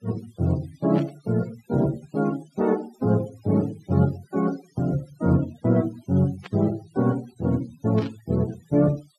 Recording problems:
denoising artefacts; signal-to-artefact ratio 22 dB
static burst; at 1 s, at 6.5 s and at 8 s; peak -12 dB vs average level

